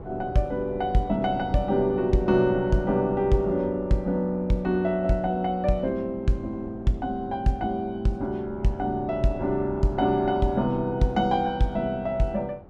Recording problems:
wind on the microphone; below 420 Hz, SNR 16 dB

